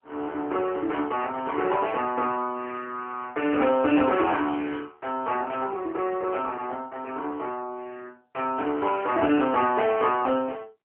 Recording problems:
telephone audio; 260 Hz to 3.1 kHz, AMR-NB

